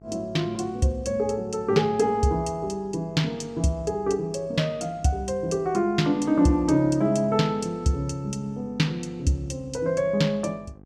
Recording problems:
hum; 50 Hz, harmonics up to 1.2 kHz, SNR 24 dB

